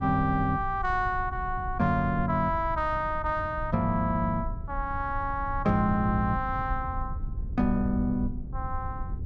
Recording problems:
low-frequency rumble; below 88 Hz, SNR 9 dB

